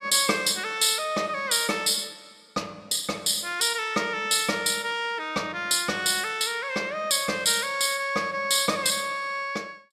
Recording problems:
none

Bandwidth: 14.5 kHz